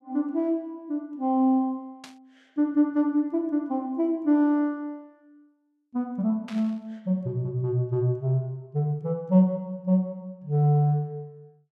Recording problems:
burst of static; at 2 s and at 6.5 s; peak -12 dB vs average level

